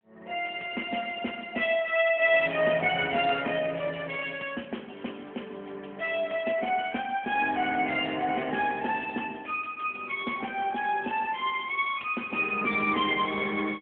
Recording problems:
telephone audio; 240 Hz to 3.3 kHz, AMR-NB

